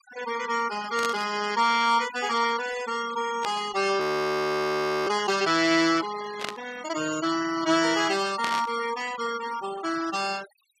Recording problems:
denoising artefacts; signal-to-artefact ratio 14 dB
burst of static; 4 times, first at 1 s; peak -2 dB vs average level
frozen audio; at 4 s for 1 s

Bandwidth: 15.5 kHz